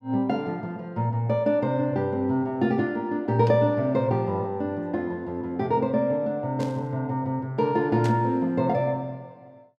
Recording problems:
burst of static; at 6.5 s and at 8 s; peak -12 dB vs average level

